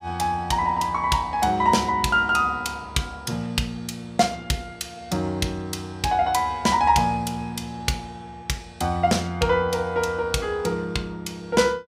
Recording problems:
none

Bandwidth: 15.5 kHz